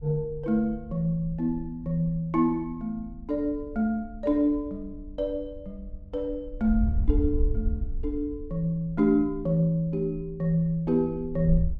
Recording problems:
wind on the microphone; below 68 Hz, SNR 8 dB

